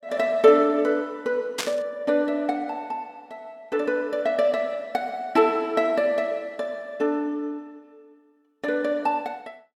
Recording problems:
burst of static; at 1.5 s; peak +2 dB vs average level

